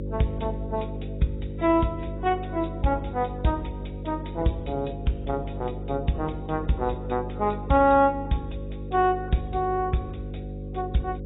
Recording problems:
codec artefacts; AAC, log-spectral distance 3 dB, nothing above 3.8 kHz
electrical hum; 50 Hz, harmonics up to 550 Hz, SNR 8 dB

